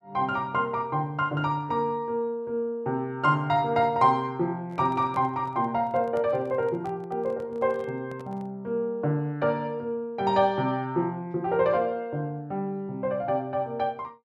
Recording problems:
handling noise; from 4.5 to 8.5 s; peak -11 dB vs average level

